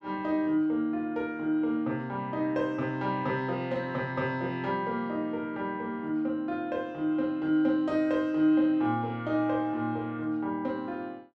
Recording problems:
none

